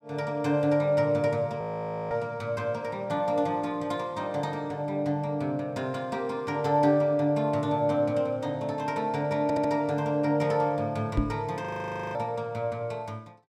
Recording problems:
frozen audio; at 1.5 s and at 12 s for 0.5 s
audio stuttering; at 9.5 s
knock on the microphone; at 11 s; peak +5 dB vs average level

